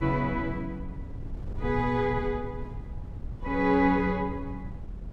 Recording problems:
wind on the microphone; below 110 Hz, SNR 11 dB

